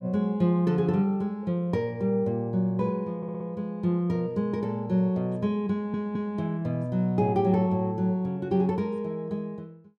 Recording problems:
stutter; at 3 s and at 5.5 s

